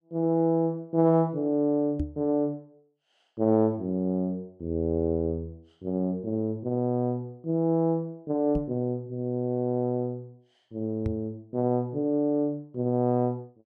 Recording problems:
microphone bump; at 2 s, at 8.5 s and at 11 s; peak 0 dB vs average level

